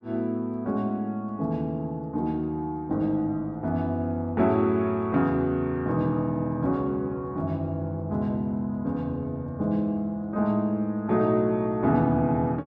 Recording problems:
none

